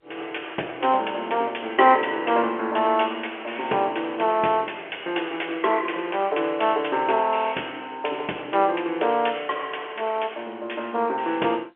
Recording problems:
phone line; 300 Hz to 3.2 kHz, G.711

